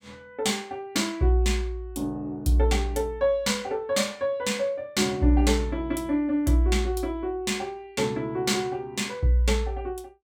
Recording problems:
none

